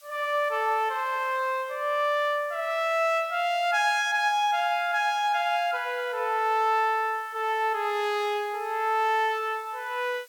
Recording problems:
hiss; SNR 27 dB

